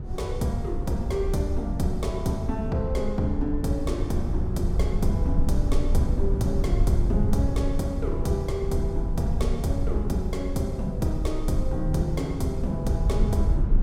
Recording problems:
rumble; below 78 Hz, SNR 1 dB
wind on the microphone; below 100 Hz, SNR 16 dB

